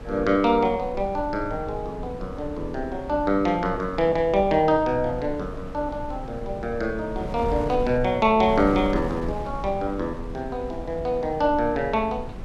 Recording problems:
wind noise; below 210 Hz, SNR 12 dB

